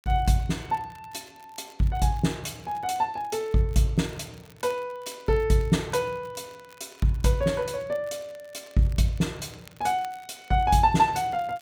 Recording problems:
crackling; vinyl, SNR 28 dB

